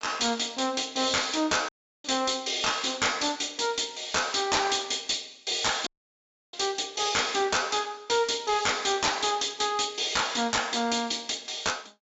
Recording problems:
treble cut off; nothing above 8 kHz
distortion; hard clipping, uneven, signal-to-distortion ratio 7 dB
audio cutting out; at 1.5 s and at 6 s for 0.5 s

